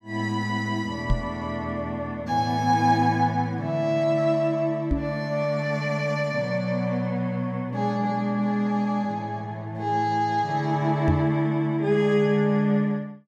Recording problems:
knock on the microphone; at 1 s, at 5 s and at 11 s; peak +4 dB vs average level

